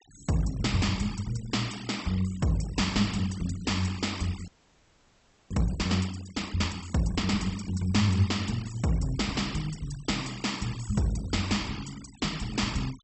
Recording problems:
low-pass filter; nothing above 7.9 kHz
noise reduction artefacts; signal-to-artefact ratio 17 dB
audio freezing; at 4.5 s for 1 s

